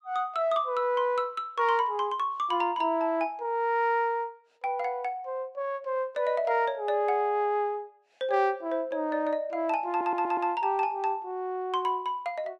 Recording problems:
audio stuttering; at 10 s

